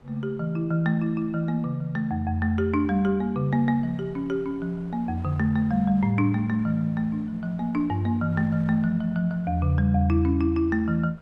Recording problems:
wind noise; below 620 Hz, SNR 25 dB

